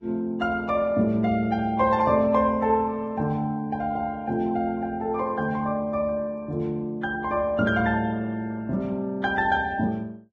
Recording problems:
codec artefacts; Vorbis, log-spectral distance 2 dB

